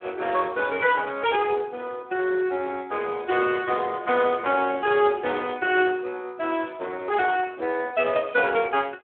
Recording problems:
telephone audio; 280 Hz to 3.4 kHz, Speex

